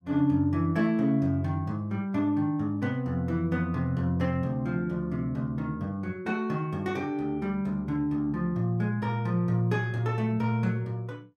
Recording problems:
none

